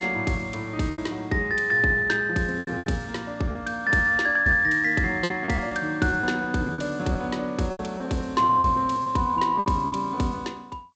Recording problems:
lossy codec; G.722, log-spectral distance 2 dB, nothing above 7.8 kHz
lost packets; 9% of the sound replaced, filled with repeated pitch periods

